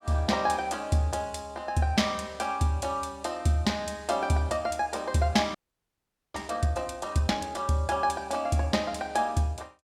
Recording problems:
frozen audio; at 5.5 s for 1 s

